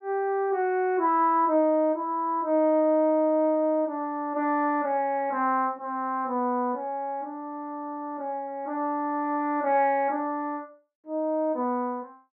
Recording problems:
none

